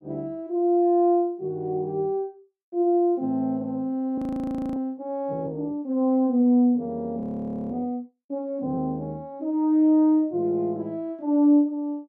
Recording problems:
audio freezing; at 4 s for 0.5 s and at 7 s for 0.5 s

